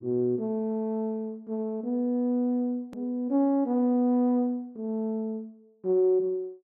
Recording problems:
hard cut with a click; at 3 s

